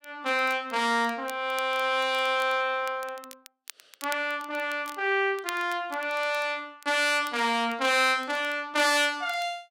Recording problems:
crackling; vinyl, SNR 21 dB

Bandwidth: 16 kHz